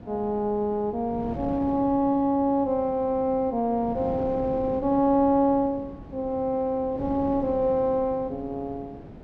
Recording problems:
wind on the microphone; below 410 Hz, SNR 14 dB

